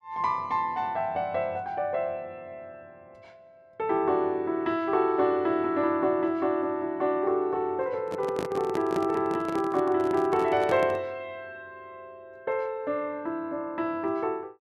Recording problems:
handling noise; from 8 to 11 s; peak -1 dB vs average level

